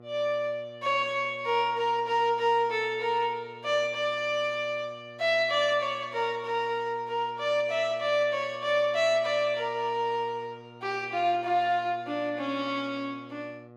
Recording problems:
hum; 60 Hz, harmonics up to 1.8 kHz, SNR 22 dB

